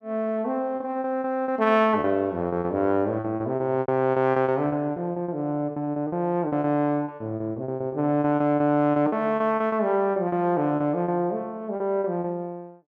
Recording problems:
packet loss; 14% of the sound replaced, filled with repeated pitch periods

